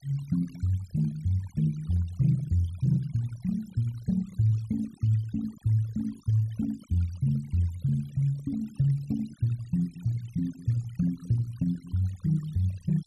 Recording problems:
noise reduction artefacts; signal-to-artefact ratio 25 dB

